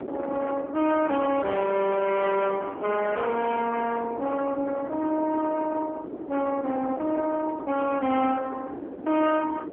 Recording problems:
telephone audio; 220 Hz to 3.5 kHz, AMR-NB
distortion; soft clipping, signal-to-distortion ratio 7 dB
wind noise; below 620 Hz, SNR 12 dB

